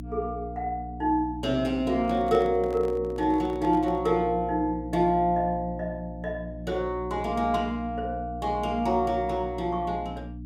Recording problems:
electrical hum; 60 Hz, harmonics up to 300 Hz, SNR 12 dB
handling noise; from 2 to 4 s; peak -7 dB vs average level

